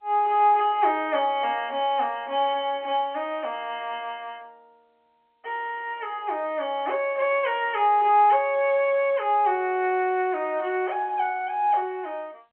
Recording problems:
phone line; 260 Hz to 3.3 kHz, G.711

